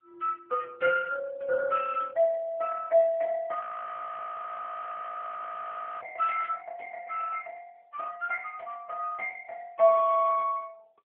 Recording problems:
telephone audio; 300 Hz to 3.3 kHz, AMR-NB
frozen audio; at 3.5 s for 2.5 s

